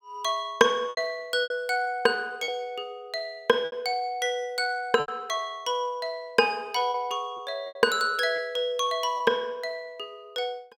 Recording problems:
lost packets; 5% of the sound replaced, filled with repeated pitch periods

